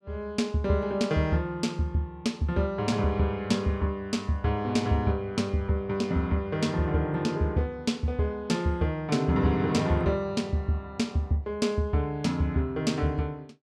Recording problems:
none

